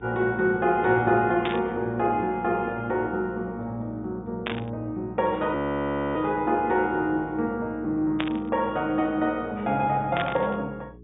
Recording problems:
treble cut off; nothing above 3.7 kHz
hum; 60 Hz, harmonics up to 420 Hz, SNR 22 dB
static burst; 4 times, first at 1.5 s; peak 0 dB vs average level
frozen audio; at 5.5 s for 0.5 s

